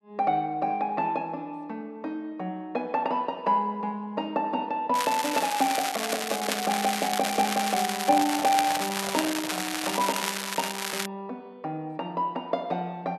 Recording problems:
crackling; from 5 to 11 s; loose cable, SNR 2 dB
microphone handling noise; from 8 to 10 s; peak -4 dB vs average level

